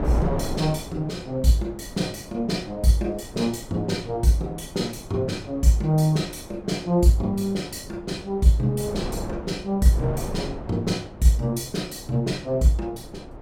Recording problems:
wind noise; below 530 Hz, SNR 13 dB

